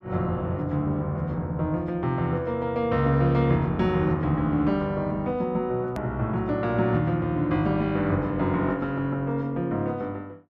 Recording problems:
hard cut with a click; at 6 s

